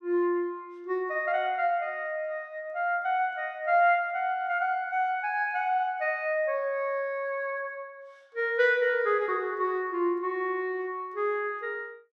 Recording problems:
none

